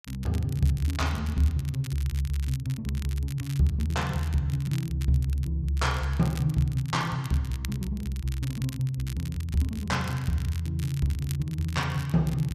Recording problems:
crackle; vinyl, SNR 18 dB

